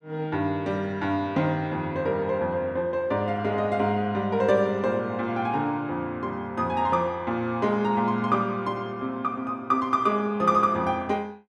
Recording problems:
none

